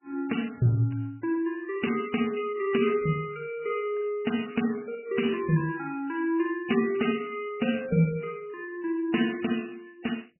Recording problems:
codec artefacts; MP3, log-spectral distance 7 dB, nothing above 2.9 kHz

